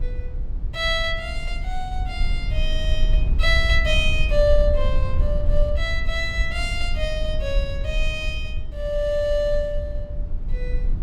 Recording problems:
low-frequency rumble; below 54 Hz, SNR 2 dB

